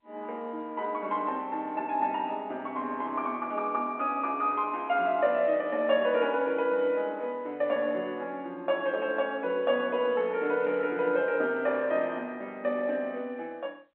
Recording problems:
telephone audio; 220 Hz to 3.3 kHz, G.711

